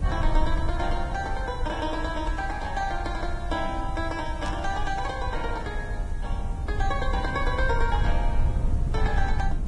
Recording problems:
lossy codec; Vorbis, log-spectral distance 2 dB
hiss; slope -4 dB per octave, SNR 23 dB
low-frequency rumble; below 70 Hz, SNR 0 dB
static burst; at 4.5 s; peak -7 dB vs average level

